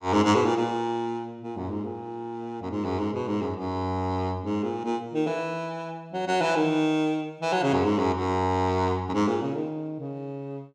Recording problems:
none

